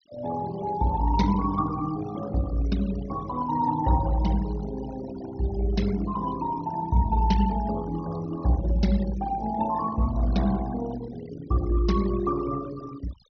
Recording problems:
low-pass filter; nothing above 6.1 kHz
noise reduction artefacts; signal-to-artefact ratio 16 dB

